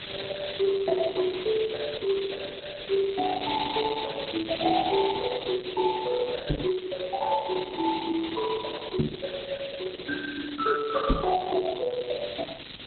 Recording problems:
lossy compression; Opus, log-spectral distance 16 dB
background hiss; SNR 9 dB
crackling; at 5 s and from 6.5 to 12 s; loose cable, SNR 26 dB
microphone bump; at 6.5 s, at 9 s and at 11 s; peak +8 dB vs average level

